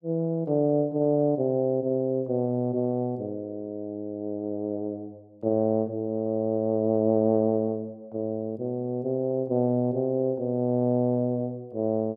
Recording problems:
none

